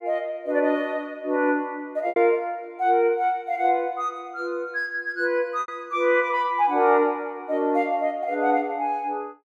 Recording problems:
packet loss; 1.7% of the sound replaced, filled with repeated pitch periods

